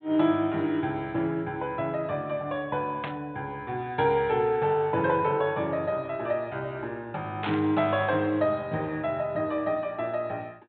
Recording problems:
treble missing; nothing above 4 kHz
static burst; at 3 s and at 7.5 s; peak -2 dB vs average level

